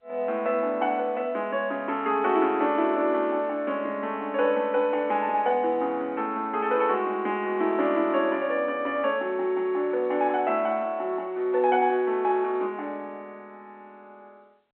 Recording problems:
phone line; 240 Hz to 3.3 kHz, G.711

